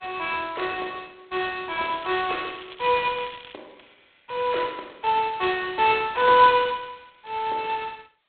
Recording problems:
telephone audio; 320 Hz to 3.9 kHz, G.726
crackling; from 2 to 3.5 s; loose cable, SNR 20 dB

